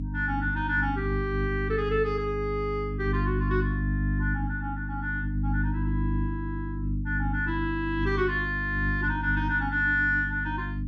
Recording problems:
electrical hum; 50 Hz, harmonics up to 300 Hz, SNR 2 dB

